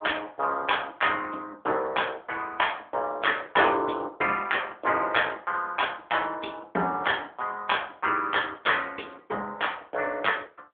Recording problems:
telephone audio; 240 Hz to 3.5 kHz, AMR-NB

